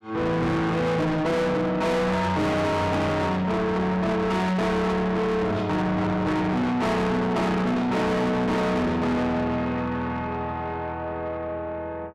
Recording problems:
distortion; soft clipping, signal-to-distortion ratio 6 dB

